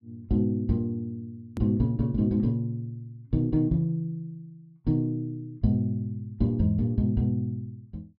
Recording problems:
low-pass filter; nothing above 5.5 kHz
click at an edit; at 1.5 s

